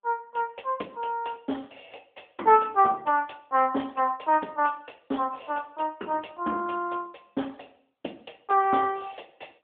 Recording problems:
phone line; 220 Hz to 3.4 kHz, AMR-NB

